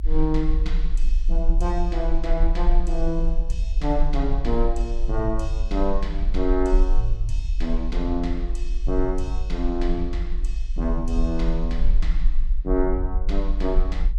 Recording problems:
low-frequency rumble; below 44 Hz, strongest tone 22 Hz, SNR -1 dB

